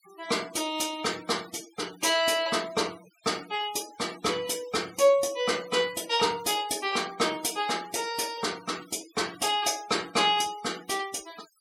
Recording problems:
denoising artefacts; signal-to-artefact ratio 18 dB

